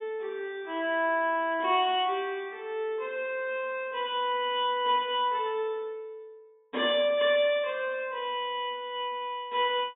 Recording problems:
low-pass filter; nothing above 4 kHz

